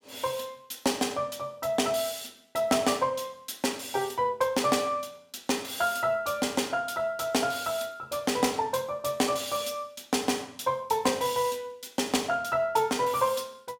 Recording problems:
none

